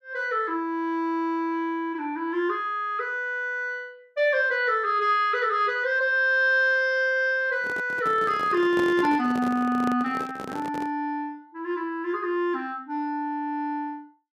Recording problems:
handling noise; from 7.5 to 11 s; peak -5 dB vs average level

